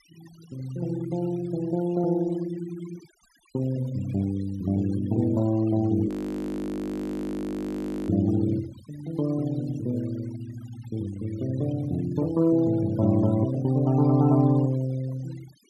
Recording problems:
denoising artefacts; signal-to-artefact ratio 22 dB
audio freezing; at 6 s for 2 s

